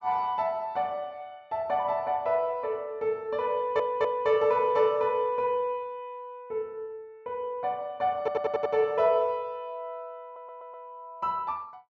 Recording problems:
stutter; at 3.5 s, at 8 s and at 10 s

